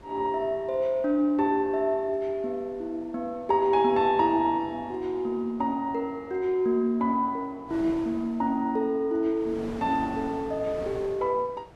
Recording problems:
wind noise; below 880 Hz, SNR 20 dB

